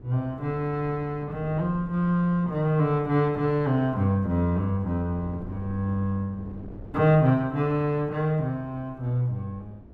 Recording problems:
wind noise; below 300 Hz, SNR 20 dB

